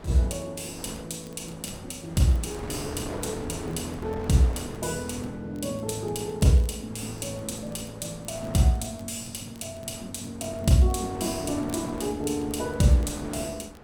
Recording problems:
wind on the microphone; below 840 Hz, SNR 13 dB
crackling; vinyl, SNR 29 dB

